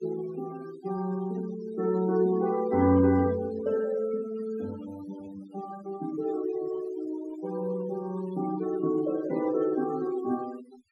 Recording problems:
noise reduction artefacts; signal-to-artefact ratio 16 dB

